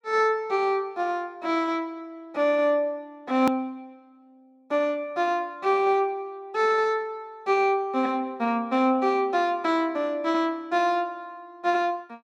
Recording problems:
edit click; at 3.5 s

